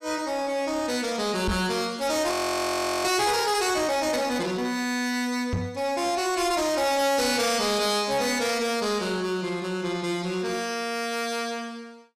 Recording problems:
distorted audio; soft clipping, signal-to-distortion ratio 8 dB
microphone bump; at 1.5 s and at 5.5 s; peak +2 dB vs average level
audio freezing; at 2.5 s for 0.5 s

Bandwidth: 14.5 kHz